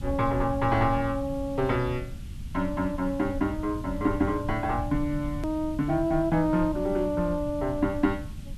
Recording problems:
background hiss; SNR 26 dB
rumble; below 120 Hz, SNR 11 dB
edit click; at 5.5 s

